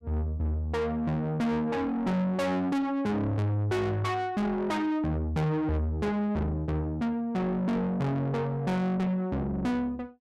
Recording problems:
distortion; soft clipping, signal-to-distortion ratio 6 dB

